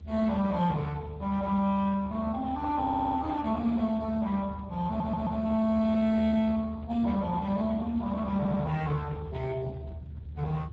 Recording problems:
lossy compression; Speex, log-spectral distance 3 dB, nothing above 7.3 kHz
low-frequency rumble; below 110 Hz, strongest tone 76 Hz, SNR 12 dB
audio stuttering; at 3 s, at 5 s and at 8.5 s

